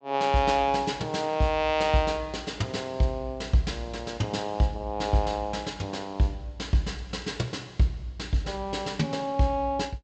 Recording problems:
low-pass filter; nothing above 8 kHz

